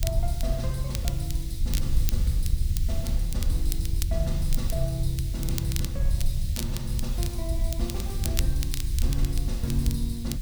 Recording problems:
hiss; slope +6 dB per octave, SNR 11 dB
low-frequency rumble; below 70 Hz, SNR -4 dB
crackle; vinyl, SNR 5 dB

